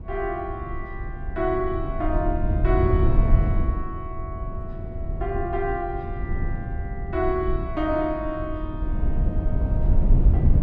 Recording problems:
rumble; below 90 Hz, SNR -2 dB

